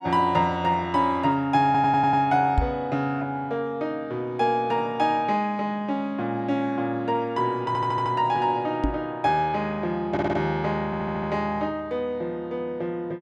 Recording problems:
audio stuttering; 4 times, first at 1.5 s
knock on the microphone; at 2.5 s and at 9 s; peak +5 dB vs average level

